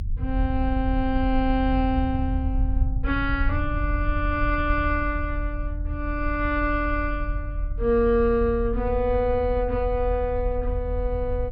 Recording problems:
treble missing; nothing above 5.5 kHz
low-frequency rumble; below 78 Hz, strongest tone 42 Hz, SNR 4 dB

